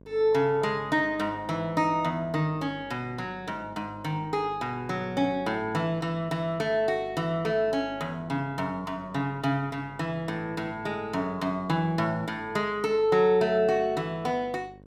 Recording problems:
hum; 50 Hz, harmonics up to 1.1 kHz, SNR 22 dB

